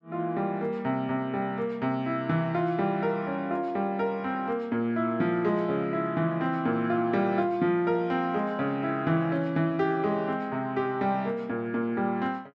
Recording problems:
none

